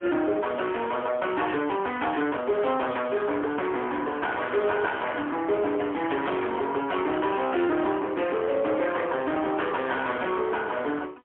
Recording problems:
telephone audio; 280 Hz to 3.4 kHz, AMR-NB, then MP3
distorted audio; hard clipping, signal-to-distortion ratio 9 dB

